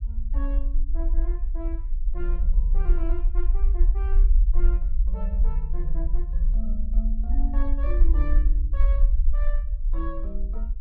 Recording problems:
low-frequency rumble; below 44 Hz, SNR -14 dB

